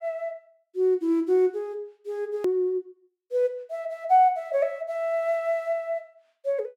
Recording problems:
edit click; at 2.5 s

